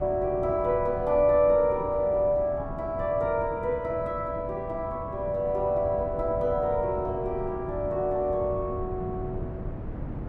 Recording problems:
wind on the microphone; below 240 Hz, SNR 11 dB

